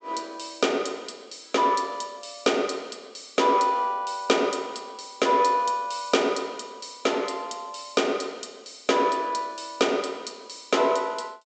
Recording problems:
low-pass filter; nothing above 8 kHz

